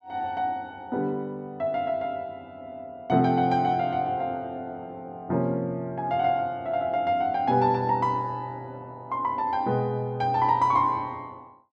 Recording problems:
none

